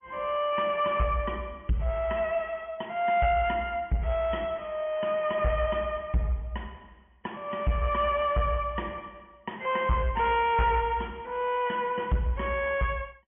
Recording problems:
low-pass filter; nothing above 3.1 kHz
lossy compression; MP3, log-spectral distance 2 dB
distortion; soft clipping, signal-to-distortion ratio 12 dB

